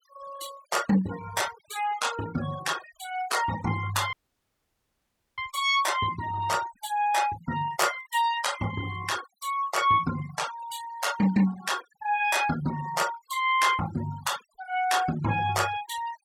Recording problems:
noise reduction artefacts; signal-to-artefact ratio 14 dB
dropout; at 4 s for 1.5 s

